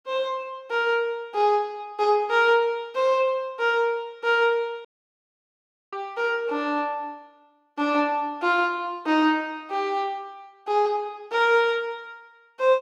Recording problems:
audio cutting out; at 5 s for 1 s

